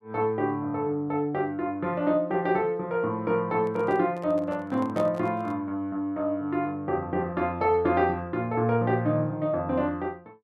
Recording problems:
handling noise; from 3.5 to 5.5 s; peak -5 dB vs average level

